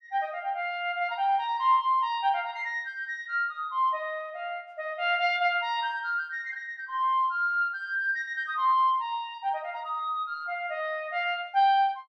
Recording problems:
none

